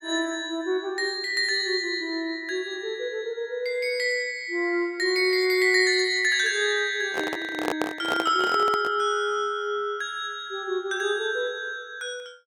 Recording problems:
handling noise; from 7 to 9 s; peak +1 dB vs average level

